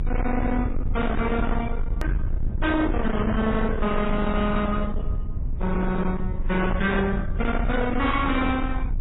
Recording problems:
codec artefacts; AAC, then MP3, log-spectral distance 2 dB, nothing above 3.8 kHz
distortion; hard clipping, uneven, signal-to-distortion ratio 7 dB
rumble; below 140 Hz, strongest tone 26 Hz, SNR 4 dB
hard cut with a click; at 2 s

